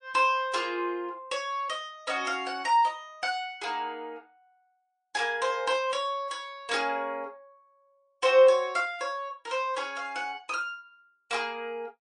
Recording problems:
lossy compression; MP3, log-spectral distance 2 dB, nothing above 9.2 kHz

